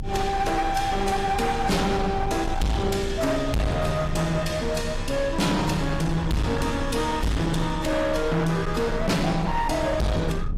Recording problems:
lossy compression; AAC, log-spectral distance 3 dB, nothing above 14.7 kHz
distorted audio; hard clipping, signal-to-distortion ratio 7 dB
low-frequency rumble; below 130 Hz, strongest tone 24 Hz, SNR 9 dB

